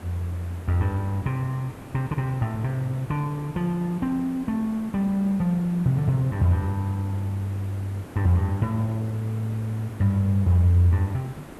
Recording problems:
hiss; slope -7 dB per octave, SNR 17 dB

